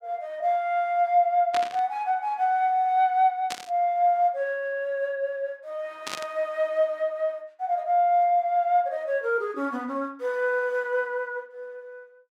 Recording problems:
static burst; at 1.5 s, at 3.5 s and at 6 s; peak -3 dB vs average level

